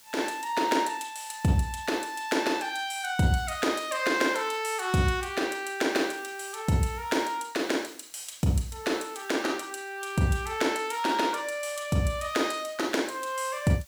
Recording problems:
background hiss; slope +1 dB per octave, SNR 24 dB

